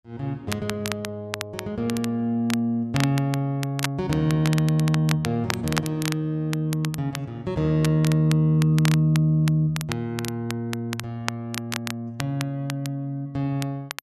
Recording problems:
crackling; vinyl, SNR 10 dB

